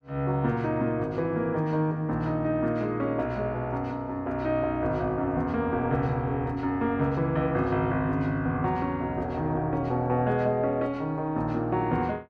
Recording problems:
none

